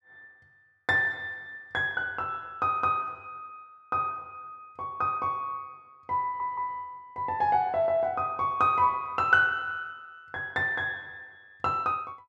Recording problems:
stutter; at 6 s

